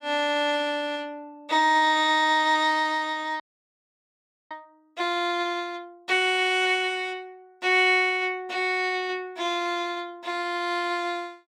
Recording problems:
audio freezing; at 3.5 s for 1 s

